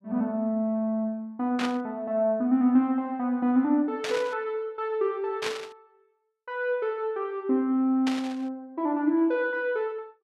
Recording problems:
burst of static; 4 times, first at 1.5 s; peak -1 dB vs average level

